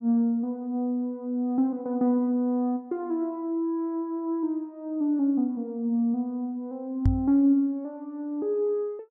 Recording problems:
microphone bump; at 7 s; peak +7 dB vs average level

